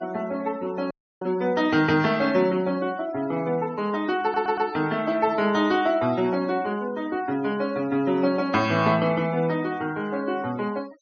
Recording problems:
treble missing; nothing above 6.5 kHz
denoising artefacts; signal-to-artefact ratio 21 dB
dropout; at 1 s
stutter; at 4 s

